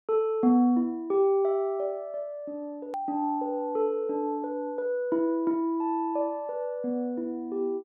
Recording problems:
edit click; at 3 s

